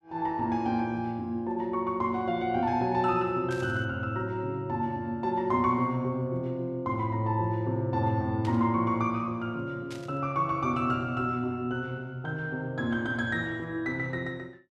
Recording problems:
burst of static; at 3.5 s, at 8.5 s and at 10 s; peak -10 dB vs average level

